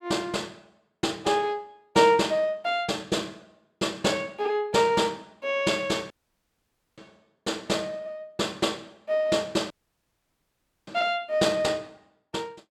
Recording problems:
audio cutting out; at 6 s for 1 s and at 9.5 s for 1 s

